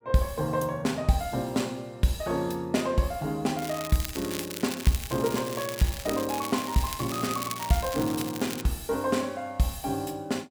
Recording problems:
crackling; from 3.5 to 8.5 s; loose cable, SNR 8 dB

